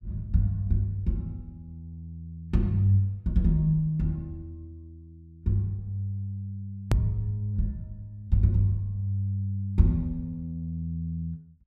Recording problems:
hard cut with a click; at 7 s

